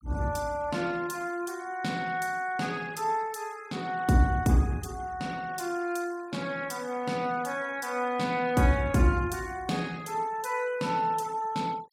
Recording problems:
denoising artefacts; signal-to-artefact ratio 22 dB

